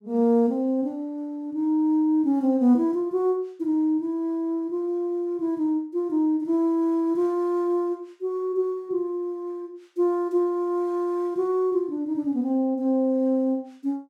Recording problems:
none

